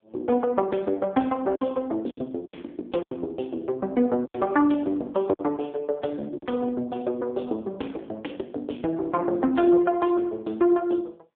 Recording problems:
telephone audio; 220 Hz to 3.4 kHz, AMR-NB
lost packets; 4% of the sound replaced, filled with silence

